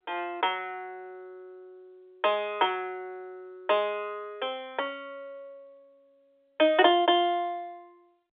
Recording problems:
phone line; 300 Hz to 3.6 kHz, G.711

